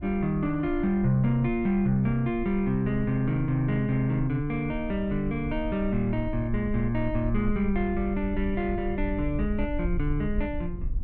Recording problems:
rumble; below 58 Hz, strongest tone 22 Hz, SNR 10 dB

